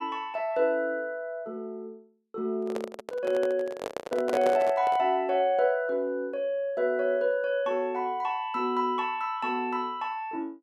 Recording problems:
microphone handling noise; from 2.5 to 5 s; peak +1 dB vs average level

